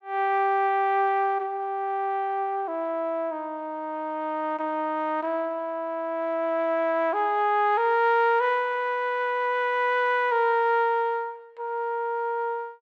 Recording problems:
none

